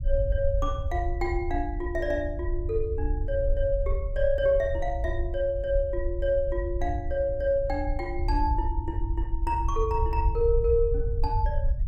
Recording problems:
rumble; below 68 Hz, SNR 3 dB

